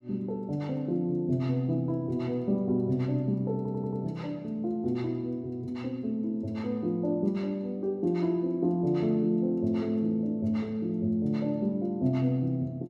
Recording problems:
audio stuttering; at 3.5 s

